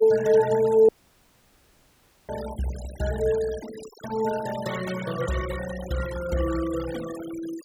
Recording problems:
noise reduction artefacts; signal-to-artefact ratio 14 dB
dropout; at 1 s for 1.5 s

